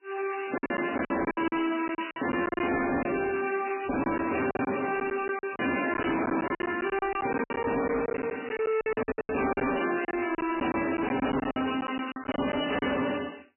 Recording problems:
lossy compression; MP3, then MP3, log-spectral distance 9 dB, nothing above 2.9 kHz
distorted audio; soft clipping, signal-to-distortion ratio 7 dB
lost packets; 14% of the sound replaced, filled with silence

